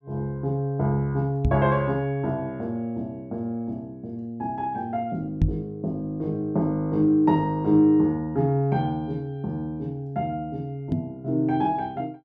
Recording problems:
microphone thump; at 1.5 s, at 5.5 s and at 11 s; peak +7 dB vs average level

